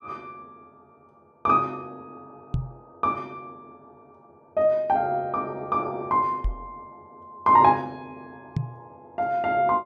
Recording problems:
microphone thump; at 2.5 s, at 6.5 s and at 8.5 s; peak +1 dB vs average level

